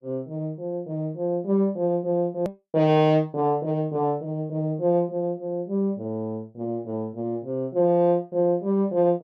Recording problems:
hard cut with a click; at 2.5 s

